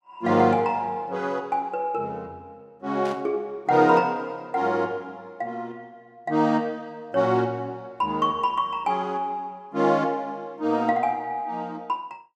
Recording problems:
static burst; at 3 s; peak -13 dB vs average level

